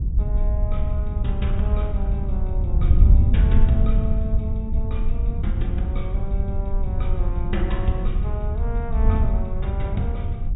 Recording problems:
treble missing; nothing above 4 kHz
wind noise; below 78 Hz, SNR -8 dB

